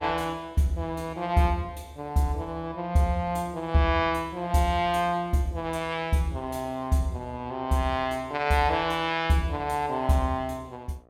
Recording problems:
hum; 60 Hz, harmonics up to 1.9 kHz, SNR 29 dB

